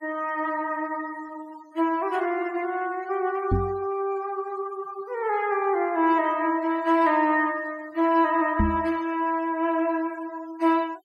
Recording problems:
denoising artefacts; signal-to-artefact ratio 25 dB
microphone thump; at 3.5 s and at 8.5 s; peak +5 dB vs average level

